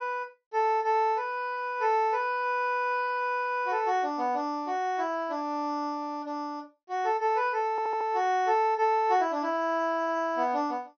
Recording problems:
low-pass filter; nothing above 6.3 kHz
audio stuttering; at 7.5 s

